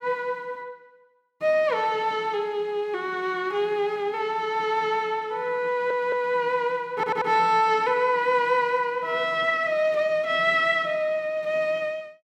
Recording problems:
audio stuttering; at 5.5 s and at 7 s

